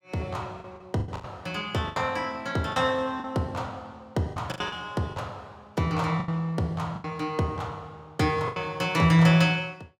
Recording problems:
lost packets; 9% of the sound replaced, filled with the last packet

